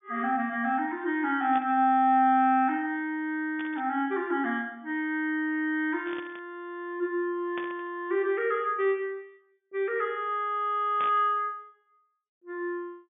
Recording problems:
treble cut off; nothing above 3.5 kHz
static burst; 5 times, first at 1.5 s; peak -9 dB vs average level

